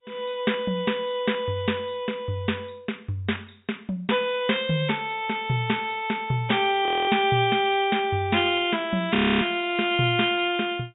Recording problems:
low-pass filter; nothing above 3.2 kHz
lossy codec; G.722, log-spectral distance 4 dB
audio freezing; at 7 s and at 9 s

